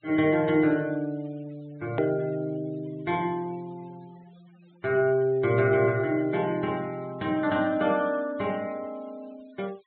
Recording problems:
treble missing; nothing above 4 kHz
noise reduction artefacts; signal-to-artefact ratio 26 dB
click at an edit; at 2 s

